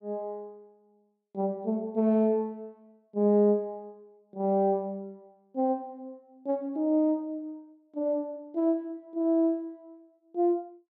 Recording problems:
none

